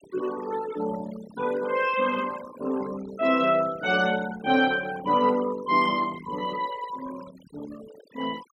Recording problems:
denoising artefacts; signal-to-artefact ratio 17 dB

